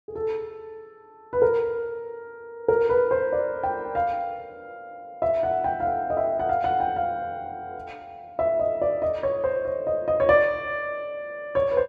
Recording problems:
none

